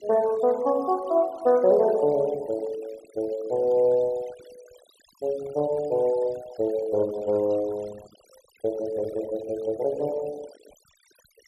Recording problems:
denoising artefacts; signal-to-artefact ratio 23 dB

